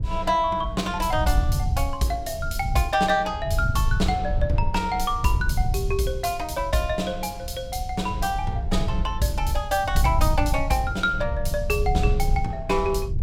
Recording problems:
wind noise; below 88 Hz, SNR 3 dB

